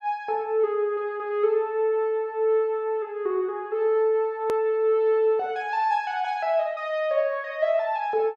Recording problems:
hard cut with a click; at 4.5 s

